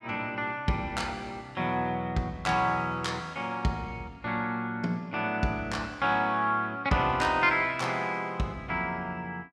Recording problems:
none

